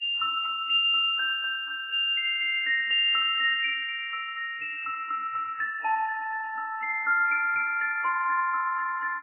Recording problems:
lossy compression; Vorbis, then MP3, log-spectral distance 3 dB, nothing above 2.4 kHz

